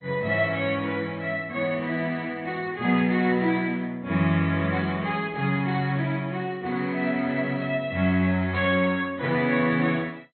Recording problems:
lossy compression; MP2, log-spectral distance 2 dB, nothing above 3.7 kHz

